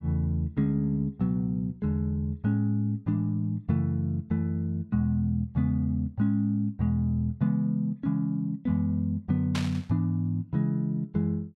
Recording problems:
static burst; at 9.5 s; peak -2 dB vs average level

